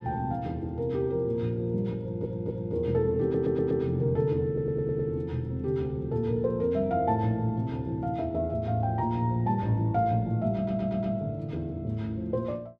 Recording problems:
stutter; 4 times, first at 2 s

